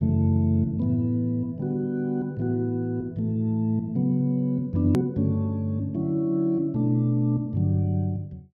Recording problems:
click at an edit; at 5 s

